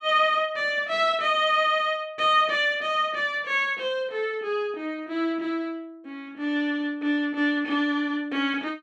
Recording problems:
none

